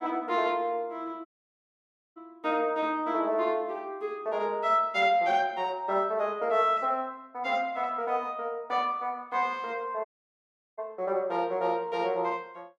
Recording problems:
audio cutting out; at 1.5 s for 1 s and at 10 s for 0.5 s

